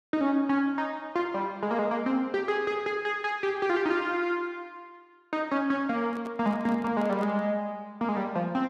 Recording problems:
microphone handling noise; from 6 to 7.5 s; peak -10 dB vs average level

